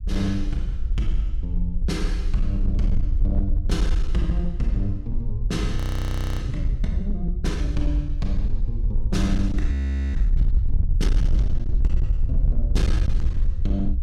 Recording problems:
distortion; hard clipping, signal-to-distortion ratio 11 dB
low-frequency rumble; below 60 Hz, SNR -4 dB
frozen audio; at 6 s for 0.5 s and at 9.5 s

